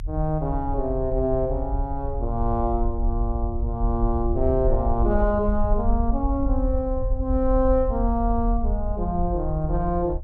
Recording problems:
low-frequency rumble; below 60 Hz, SNR 3 dB

